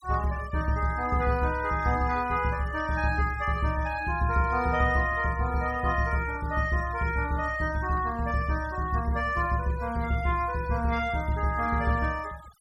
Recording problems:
noise reduction artefacts; signal-to-artefact ratio 20 dB

